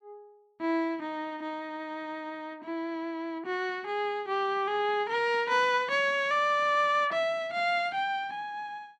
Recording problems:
none

